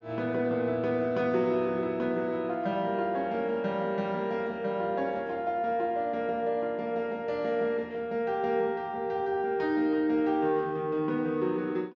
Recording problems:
treble missing; nothing above 7.2 kHz

